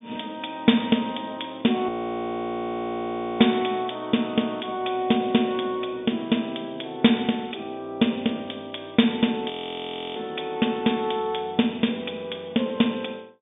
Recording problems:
treble missing; nothing above 3.7 kHz
audio freezing; at 2 s for 1.5 s and at 9.5 s for 0.5 s

